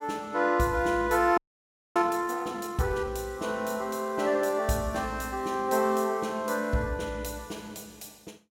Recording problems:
frozen audio; at 1.5 s for 0.5 s

